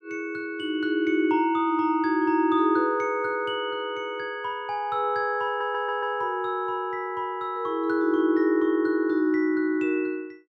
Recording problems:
stutter; at 5.5 s

